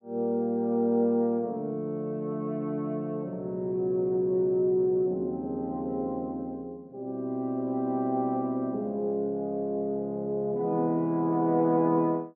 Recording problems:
none

